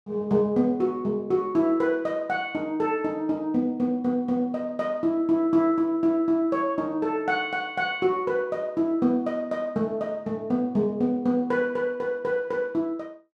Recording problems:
none

